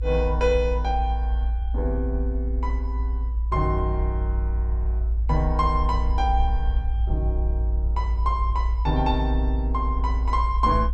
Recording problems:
rumble; below 58 Hz, strongest tone 56 Hz, SNR -2 dB

